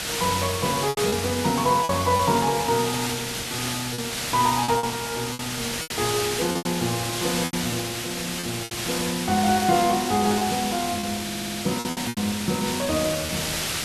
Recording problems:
background hiss; slope 0 dB per octave, SNR 3 dB
lost packets; 8% of the sound replaced, filled with repeated pitch periods
stutter; at 11 s

